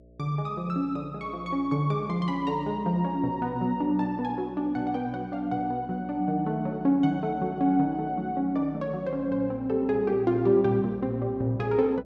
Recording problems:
hum; 60 Hz, harmonics up to 660 Hz, SNR 25 dB

